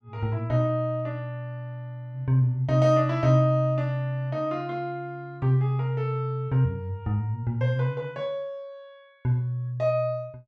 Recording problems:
none

